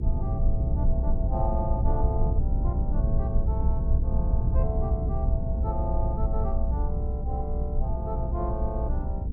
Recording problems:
hum; 60 Hz, harmonics up to 480 Hz, SNR 7 dB
rumble; below 78 Hz, SNR -8 dB

